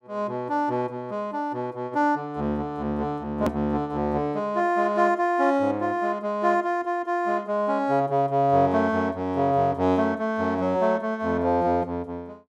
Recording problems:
click at an edit; at 3.5 s

